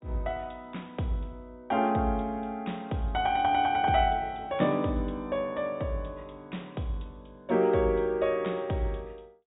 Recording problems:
treble cut off; nothing above 4 kHz

